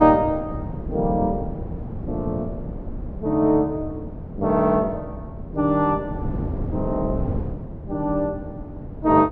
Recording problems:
wind on the microphone; below 230 Hz, SNR 9 dB

